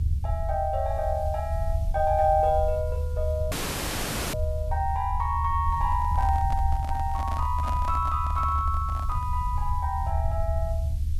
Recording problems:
background hiss; slope +3 dB per octave, SNR 27 dB
low-frequency rumble; below 78 Hz, SNR 2 dB
dropout; at 3.5 s for 1 s
microphone handling noise; from 6 to 9.5 s; peak -4 dB vs average level

